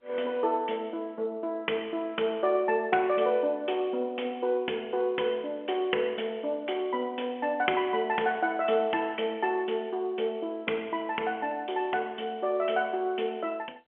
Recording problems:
phone line; 280 Hz to 3.2 kHz, G.711

